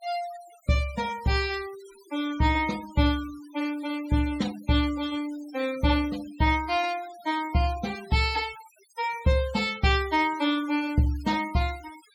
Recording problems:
noise reduction artefacts; signal-to-artefact ratio 18 dB

